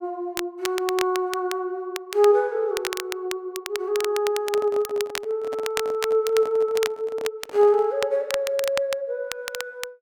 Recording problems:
crackle; vinyl, SNR 10 dB
microphone handling noise; from 4.5 to 8 s; peak -8 dB vs average level

